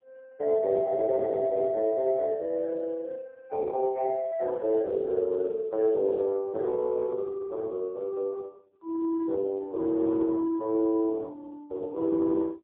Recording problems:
phone line; 280 Hz to 2 kHz, AMR-NB, then MP3

